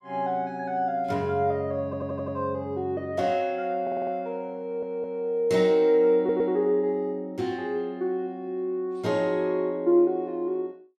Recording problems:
audio stuttering; 4 times, first at 2 s

